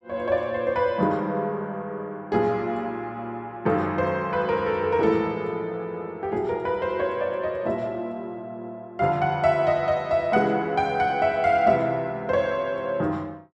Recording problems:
none

